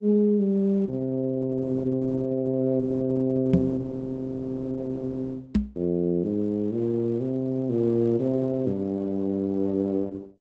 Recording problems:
lossy codec; Opus, log-spectral distance 2 dB, nothing above 7.3 kHz
microphone thump; at 3.5 s and at 5.5 s; peak +9 dB vs average level

